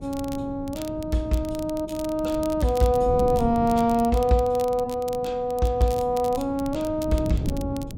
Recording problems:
wind noise; below 230 Hz, SNR 11 dB
crackling; vinyl, SNR 20 dB

